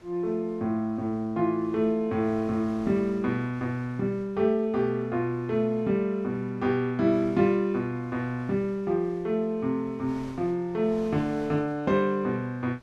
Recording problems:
wind noise; below 1.3 kHz, SNR 24 dB

